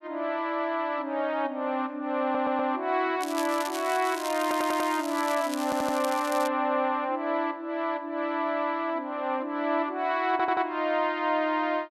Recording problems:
stutter; 4 times, first at 2 s
crackling; from 3 to 6.5 s; loose cable, SNR 12 dB

